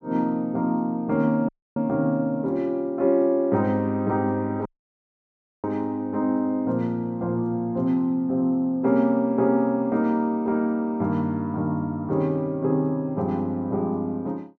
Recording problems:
audio cutting out; at 1.5 s and at 4.5 s for 1 s

